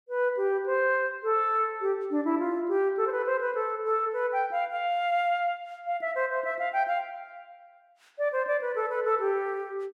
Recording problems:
none

